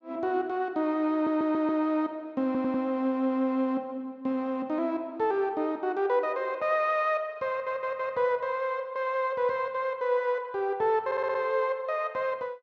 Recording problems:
stutter; 4 times, first at 1 s

